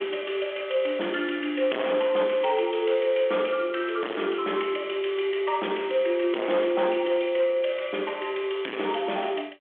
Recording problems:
phone line; 260 Hz to 3.4 kHz, G.726
distortion; hard clipping, uneven, signal-to-distortion ratio 9 dB

